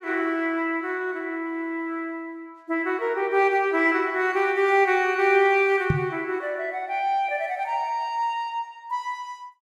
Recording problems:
microphone bump; at 6 s; peak +5 dB vs average level

